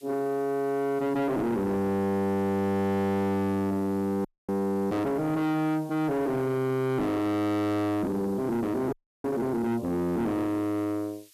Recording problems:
distorted audio; soft clipping, signal-to-distortion ratio 6 dB
background hiss; slope +7 dB per octave, SNR 27 dB
audio freezing; at 4.5 s and at 9 s

